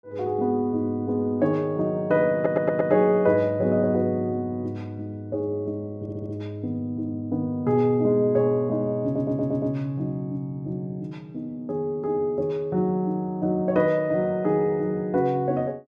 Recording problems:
stutter; at 2.5 s, at 6 s and at 9 s

